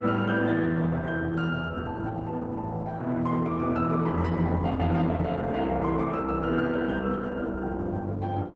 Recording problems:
lossy codec; Opus, log-spectral distance 3 dB, nothing above 7.8 kHz

